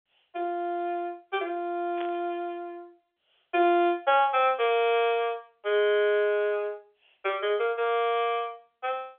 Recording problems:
phone line; 370 Hz to 3.5 kHz, G.711
burst of static; at 2 s; peak -11 dB vs average level

